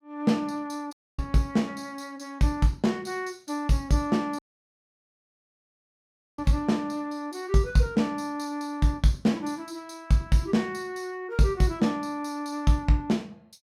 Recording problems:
audio cutting out; at 1 s and at 4.5 s for 2 s

